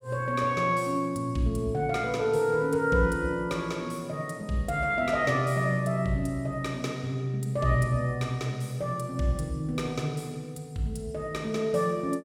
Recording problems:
none

